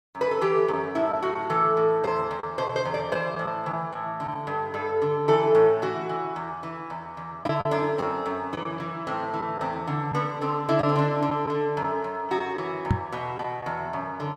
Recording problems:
lost packets; 3% of the sound replaced, filled with the last packet
microphone thump; at 13 s; peak +7 dB vs average level

